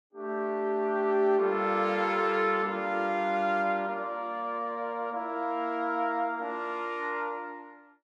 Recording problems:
none

